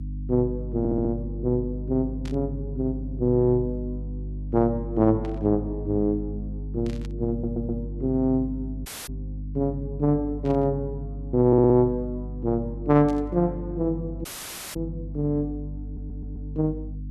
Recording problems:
hum; 50 Hz, harmonics up to 300 Hz, SNR 9 dB
audio stuttering; 4 times, first at 1 s
burst of static; 5 times, first at 2.5 s; peak -14 dB vs average level
audio cutting out; at 9 s and at 14 s for 0.5 s

